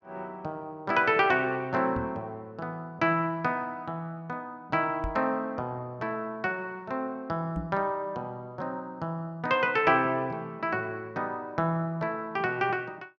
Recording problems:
microphone bump; at 2 s, at 5 s and at 7.5 s; peak -2 dB vs average level

